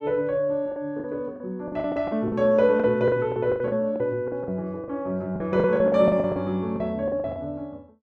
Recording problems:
lost packets; 15% of the sound replaced, filled with the last packet

